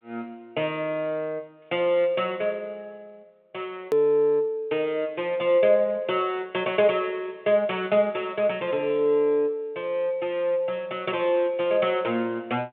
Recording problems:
phone line; 190 Hz to 3.7 kHz, G.726
hard cut with a click; at 4 s

